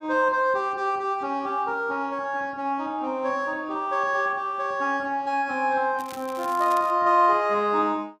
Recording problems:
crackling; at 6 s; loose cable, SNR 20 dB

